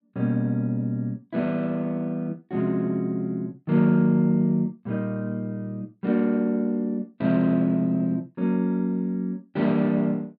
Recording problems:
none

